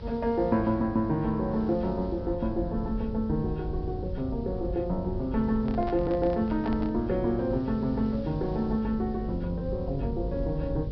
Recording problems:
treble cut off; nothing above 5.5 kHz
electrical hum; 50 Hz, harmonics up to 600 Hz, SNR 12 dB
background hiss; SNR 29 dB
rumble; below 96 Hz, SNR 11 dB
microphone handling noise; from 5.5 to 7 s; peak -7 dB vs average level

